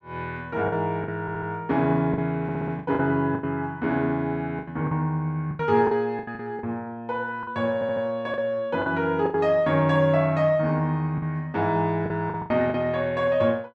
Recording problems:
packet loss; 9% of the sound replaced, filled with the last packet
audio stuttering; at 1 s, at 2.5 s and at 7.5 s

